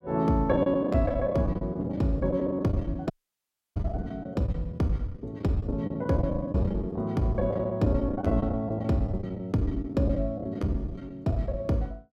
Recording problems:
lost packets; 15% of the sound replaced, filled with the last packet
dropout; at 3 s for 0.5 s

